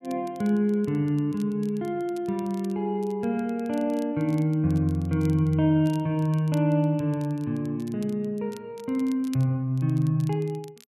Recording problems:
crackling; vinyl, SNR 27 dB

